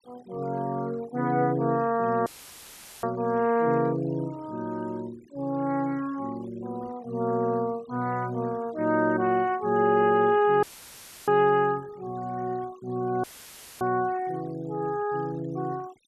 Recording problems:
denoising artefacts; signal-to-artefact ratio 24 dB
dropout; at 2.5 s for 1 s, at 11 s for 0.5 s and at 13 s for 0.5 s; filled with static

